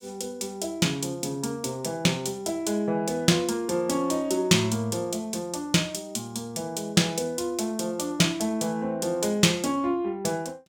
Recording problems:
none

